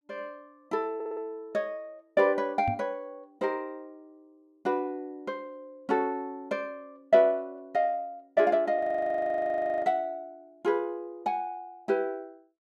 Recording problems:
audio stuttering; at 1 s
knock on the microphone; at 2.5 s; peak 0 dB vs average level
audio freezing; at 9 s for 1 s

